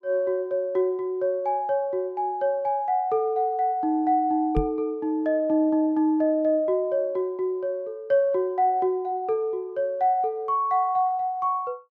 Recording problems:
knock on the microphone; at 4.5 s; peak +1 dB vs average level

